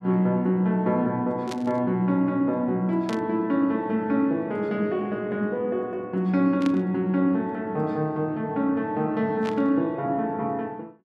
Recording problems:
burst of static; 4 times, first at 1.5 s; peak -7 dB vs average level

